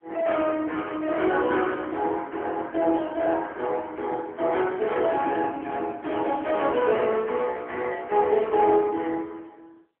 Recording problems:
phone line; 280 Hz to 3.4 kHz, AMR-NB

